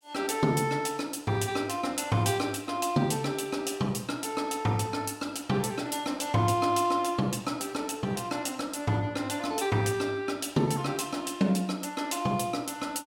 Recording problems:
none

